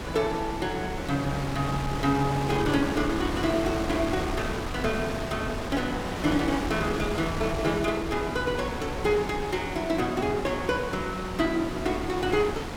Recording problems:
wind on the microphone; below 1.3 kHz, SNR 5 dB

